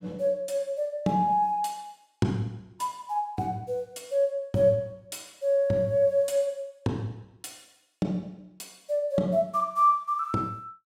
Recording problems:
none

